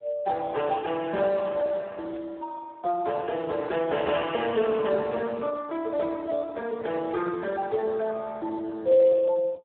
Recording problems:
telephone audio; 280 Hz to 2.2 kHz, Speex

